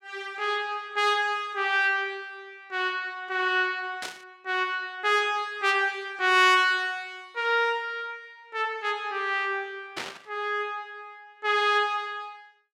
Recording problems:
burst of static; at 4 s and at 10 s; peak -3 dB vs average level

